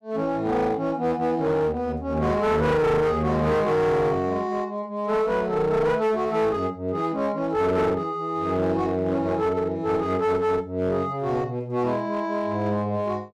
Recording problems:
distortion; hard clipping, uneven, signal-to-distortion ratio 9 dB

